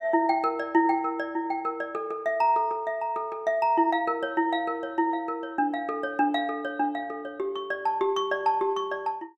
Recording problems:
none

